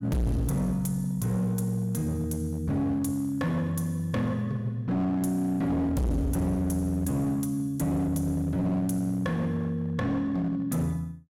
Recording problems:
distortion; hard clipping, signal-to-distortion ratio 8 dB

